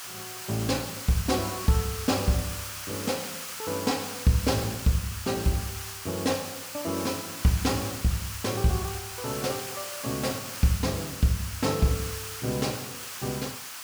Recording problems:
hiss; SNR 6 dB

